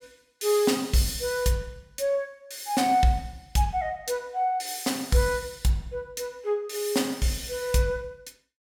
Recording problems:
none

